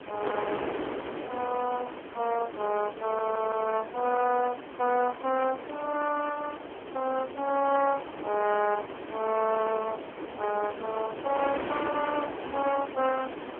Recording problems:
telephone audio; 280 Hz to 2.8 kHz, AMR-NB
background hiss; SNR 26 dB
wind on the microphone; below 990 Hz, SNR 9 dB
stutter; at 3 s

